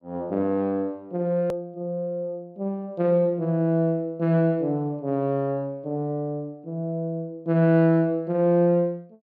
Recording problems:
click at an edit; at 1.5 s

